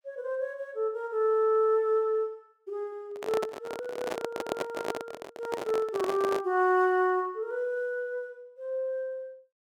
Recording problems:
handling noise; from 3 to 6.5 s; peak +3 dB vs average level

